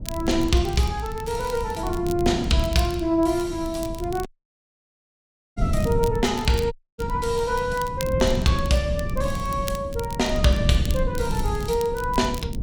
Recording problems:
low-frequency rumble; below 160 Hz, SNR 6 dB
crackling; vinyl, SNR 17 dB
dropout; at 4.5 s for 1.5 s and at 6.5 s

